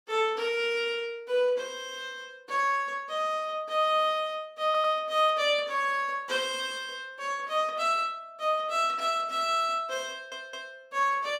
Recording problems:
audio stuttering; at 4.5 s and at 10 s

